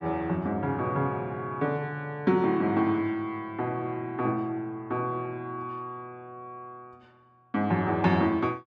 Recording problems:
none

